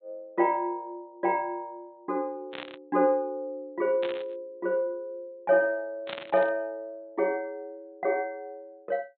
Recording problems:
low-pass filter; nothing above 4 kHz
burst of static; at 2.5 s, at 4 s and at 6 s; peak -3 dB vs average level

